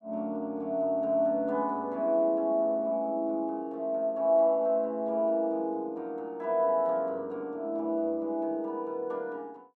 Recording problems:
none

